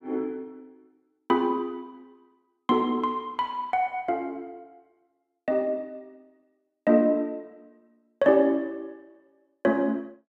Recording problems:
none

